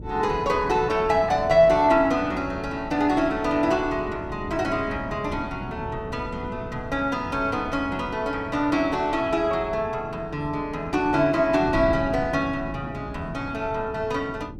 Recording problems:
wind on the microphone; below 270 Hz, SNR 13 dB

